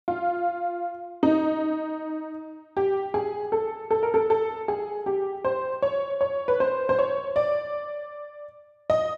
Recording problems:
none

